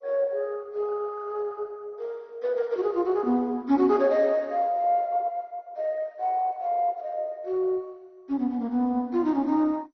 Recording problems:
lossy codec; MP2, log-spectral distance 2 dB, nothing above 6 kHz

